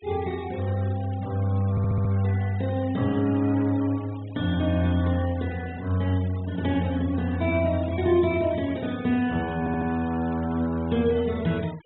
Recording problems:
low-pass filter; nothing above 3.8 kHz
noise reduction artefacts; signal-to-artefact ratio 21 dB
stutter; at 1.5 s and at 9.5 s

